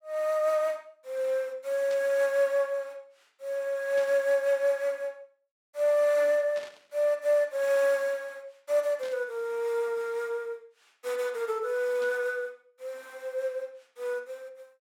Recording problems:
static burst; 5 times, first at 2 s; peak -13 dB vs average level

